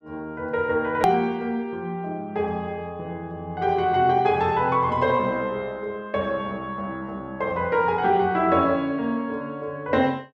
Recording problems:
click at an edit; at 1 s

